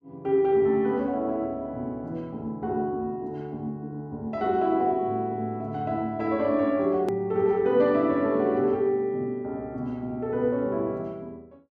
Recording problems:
edit click; at 7 s

